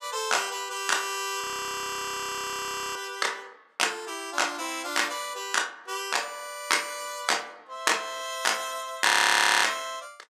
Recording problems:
audio freezing; at 1.5 s for 1.5 s and at 9 s for 0.5 s

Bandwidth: 14.5 kHz